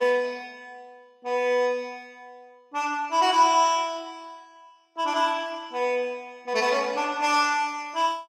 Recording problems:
codec artefacts; Opus, log-spectral distance 2 dB, nothing above 16.5 kHz

